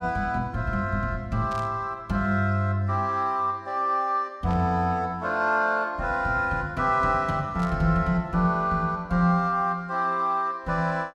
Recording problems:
burst of static; at 1.5 s, at 4.5 s and at 7.5 s; peak -15 dB vs average level

